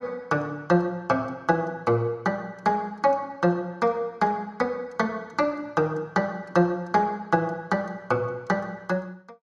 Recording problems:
none

